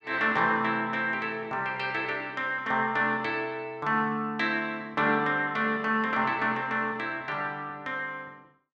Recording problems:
none

